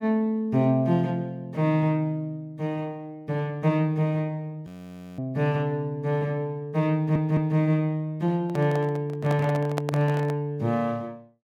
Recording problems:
frozen audio; at 4.5 s for 0.5 s
audio stuttering; at 7 s
microphone handling noise; from 8.5 to 10 s; peak -1 dB vs average level

